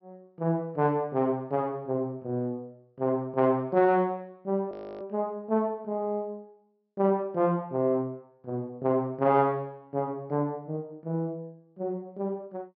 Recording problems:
treble cut off; nothing above 5.5 kHz
frozen audio; at 4.5 s

